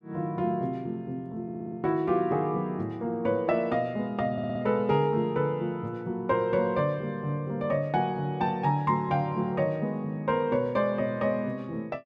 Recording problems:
audio stuttering; at 1.5 s and at 4.5 s

